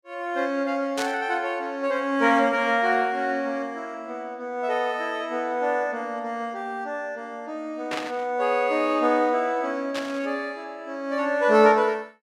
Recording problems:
static burst; at 1 s, at 8 s and at 10 s; peak -2 dB vs average level

